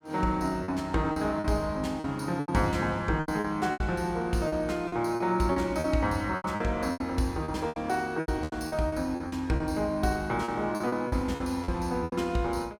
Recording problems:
packet loss; 13% of the sound replaced, filled with repeated pitch periods

